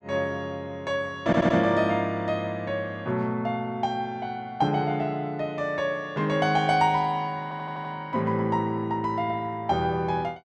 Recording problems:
stutter; at 1.5 s and at 7.5 s

